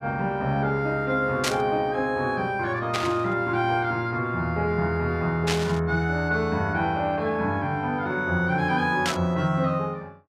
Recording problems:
static burst; 4 times, first at 1.5 s; peak +3 dB vs average level

